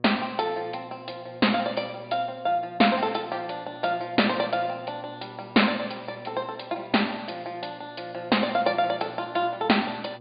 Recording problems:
low-pass filter; nothing above 4.8 kHz
mains hum; 60 Hz, harmonics up to 1.2 kHz, SNR 23 dB

